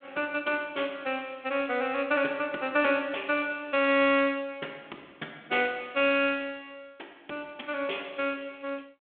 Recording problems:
phone line; 300 Hz to 3.6 kHz, G.726

